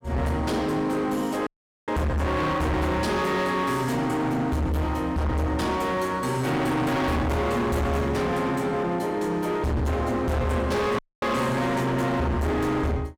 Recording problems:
distortion; hard clipping, signal-to-distortion ratio 7 dB
audio cutting out; at 1.5 s and at 11 s

